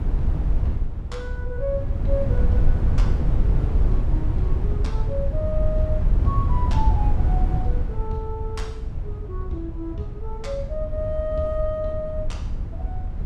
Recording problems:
wind noise; below 82 Hz, SNR -6 dB

